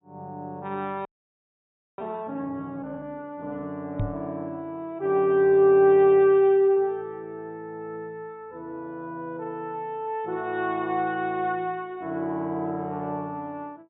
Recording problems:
treble cut off; nothing above 4 kHz
audio freezing; at 1 s for 1 s
microphone thump; at 4 s; peak 0 dB vs average level

